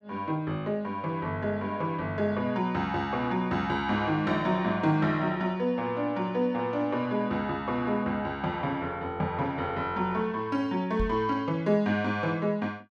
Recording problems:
microphone bump; at 11 s; peak 0 dB vs average level

